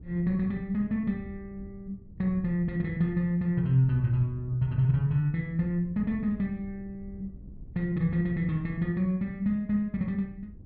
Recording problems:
treble missing; nothing above 5.5 kHz
wind noise; below 130 Hz, SNR 19 dB

